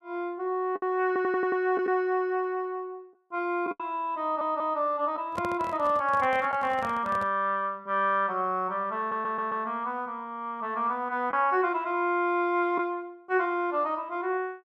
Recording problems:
lost packets; 1.7% of the sound replaced, filled with the last packet
audio stuttering; at 1 s, at 4 s and at 9 s
microphone handling noise; from 5.5 to 7.5 s; peak -5 dB vs average level

